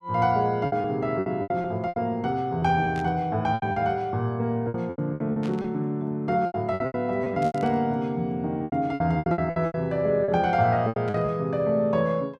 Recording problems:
lost packets; 14% of the sound replaced, filled with repeated pitch periods
burst of static; 4 times, first at 3 s; peak -13 dB vs average level

